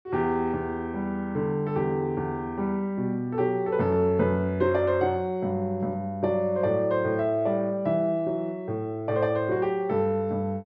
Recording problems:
none

